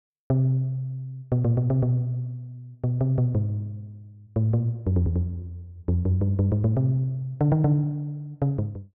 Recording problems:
none

